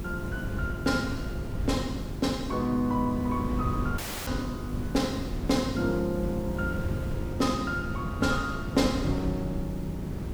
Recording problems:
electrical hum; 50 Hz, harmonics up to 400 Hz, SNR 10 dB
hiss; SNR 23 dB
wind noise; below 190 Hz, SNR 5 dB
dropout; at 4 s

